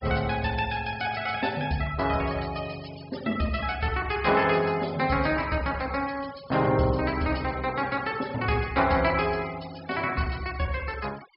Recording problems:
treble cut off; nothing above 5.5 kHz
denoising artefacts; signal-to-artefact ratio 18 dB

